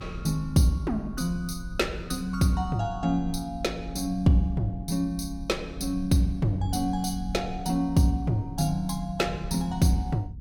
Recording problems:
rumble; below 90 Hz, SNR 12 dB

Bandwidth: 17 kHz